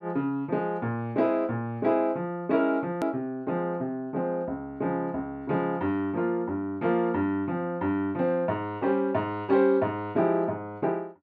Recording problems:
edit click; at 3 s

